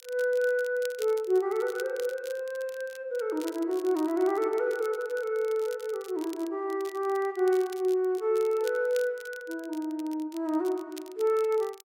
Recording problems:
crackling; vinyl, SNR 21 dB

